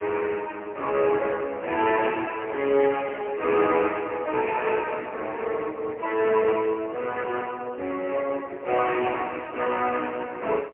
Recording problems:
telephone audio; 280 Hz to 3 kHz, AMR-NB, then MP3

